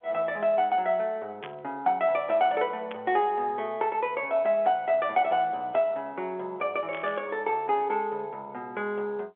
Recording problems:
telephone audio; 280 Hz to 3.5 kHz, G.711
burst of static; at 1.5 s, at 3 s and at 7 s; peak -9 dB vs average level

